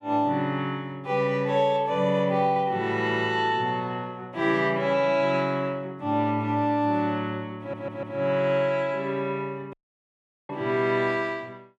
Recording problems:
stutter; at 7.5 s
dropout; at 9.5 s for 1 s

